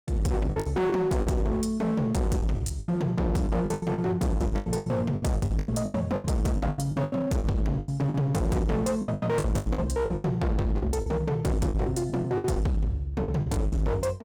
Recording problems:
distorted audio; hard clipping, signal-to-distortion ratio 7 dB
lost packets; 17% of the sound replaced, filled with the last packet

